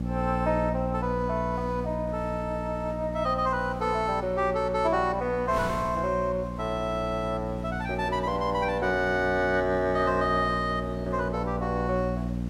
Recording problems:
mains hum; 60 Hz, harmonics up to 600 Hz, SNR 7 dB
wind on the microphone; below 1.3 kHz, SNR 20 dB

